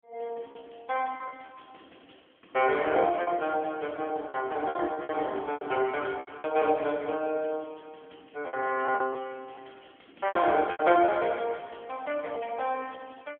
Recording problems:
telephone audio; 220 Hz to 3.3 kHz, AMR-NB
packet loss; 8% of the sound replaced, filled with repeated pitch periods

